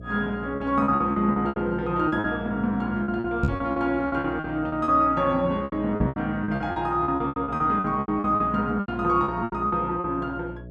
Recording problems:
hum; 60 Hz, harmonics up to 660 Hz, SNR 15 dB
lost packets; 17% of the sound replaced, filled with repeated pitch periods
knock on the microphone; at 3.5 s and at 6 s; peak +4 dB vs average level

